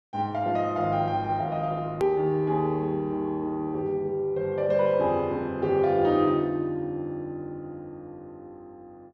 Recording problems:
click at an edit; at 2 s

